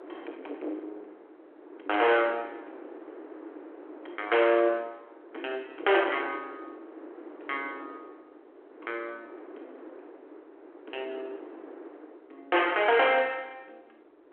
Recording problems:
telephone audio; 280 Hz to 3.3 kHz, G.726
distortion; soft clipping, signal-to-distortion ratio 8 dB
wind noise; below 640 Hz, SNR 19 dB

